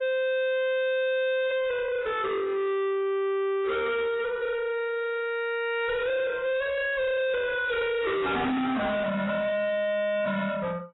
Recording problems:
lossy codec; AAC, log-spectral distance 3 dB, nothing above 3.8 kHz
distorted audio; soft clipping, signal-to-distortion ratio 6 dB

